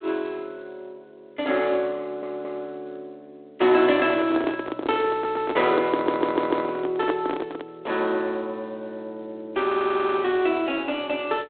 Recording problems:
telephone audio; 260 Hz to 3.5 kHz, G.726
stutter; 4 times, first at 2 s
handling noise; from 4 to 7.5 s; peak +4 dB vs average level

